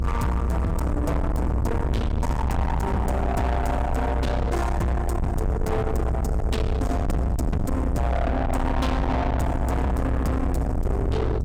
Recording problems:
distorted audio; soft clipping, signal-to-distortion ratio 5 dB
low-frequency rumble; below 270 Hz, SNR 0 dB

